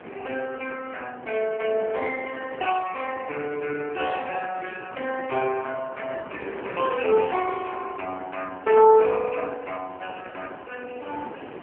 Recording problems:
telephone audio; 300 Hz to 3.1 kHz, AMR-NB
wind noise; below 1.1 kHz, SNR 15 dB

